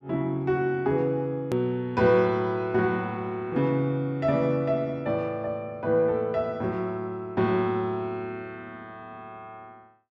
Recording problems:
edit click; at 1.5 s

